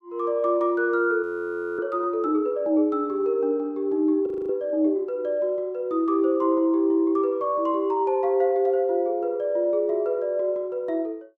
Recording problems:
audio freezing; at 1 s for 0.5 s and at 4.5 s

